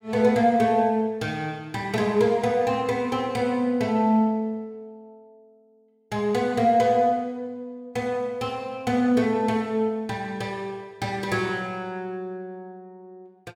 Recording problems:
none

